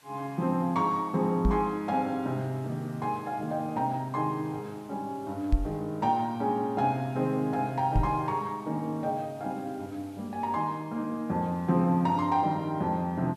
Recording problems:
hiss; SNR 28 dB
microphone thump; at 1.5 s, at 5.5 s and at 8 s; peak +7 dB vs average level

